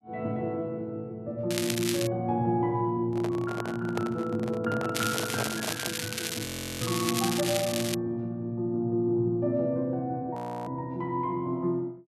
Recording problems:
crackling; at 1.5 s and from 5 to 8 s; loose cable, SNR 3 dB
handling noise; from 3 to 6 s; peak +1 dB vs average level
frozen audio; at 6.5 s and at 10 s

